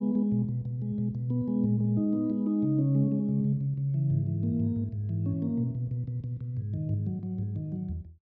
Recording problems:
none

